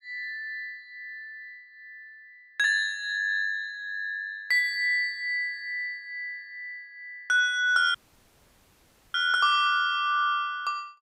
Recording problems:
audio cutting out; at 8 s for 1 s

